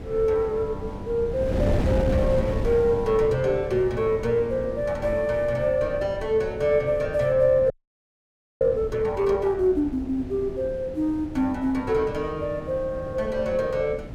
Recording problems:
wind on the microphone; below 290 Hz, SNR 9 dB
frozen audio; at 7.5 s for 1 s

